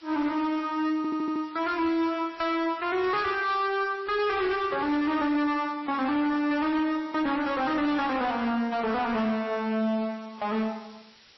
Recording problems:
lossy compression; AAC, then MP3, log-spectral distance 6 dB, nothing above 5.7 kHz
distortion; hard clipping, uneven, signal-to-distortion ratio 11 dB
background hiss; slope +1 dB per octave, SNR 27 dB
stutter; at 1 s

